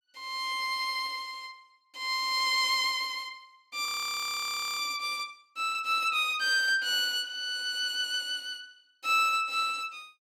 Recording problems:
frozen audio; at 4 s for 1 s

